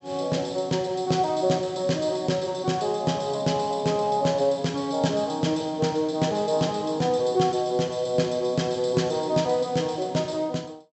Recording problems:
treble cut off; nothing above 8 kHz

